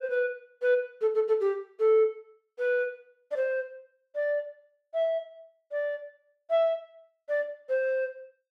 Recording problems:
none

